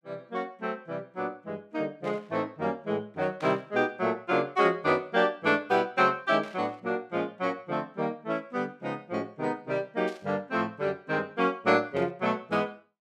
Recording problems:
static burst; 5 times, first at 2 s; peak -13 dB vs average level

